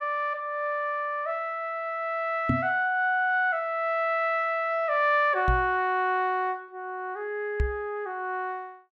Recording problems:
microphone thump; at 2.5 s, at 5.5 s and at 7.5 s; peak +5 dB vs average level

